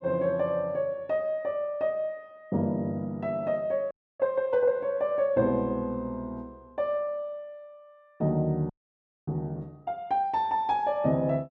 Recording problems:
frozen audio; at 4 s and at 8.5 s for 0.5 s

